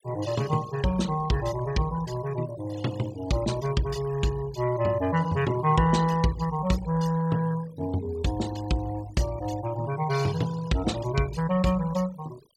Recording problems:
noise reduction artefacts; signal-to-artefact ratio 17 dB

